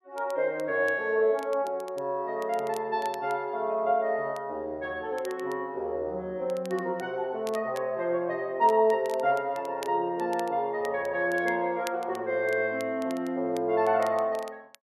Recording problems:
crackling; vinyl, SNR 22 dB

